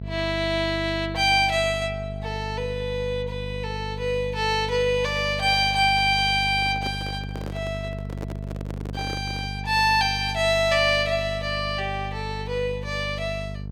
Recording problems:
hum; 50 Hz, harmonics up to 500 Hz, SNR 10 dB
microphone handling noise; from 6.5 to 9.5 s; peak -8 dB vs average level

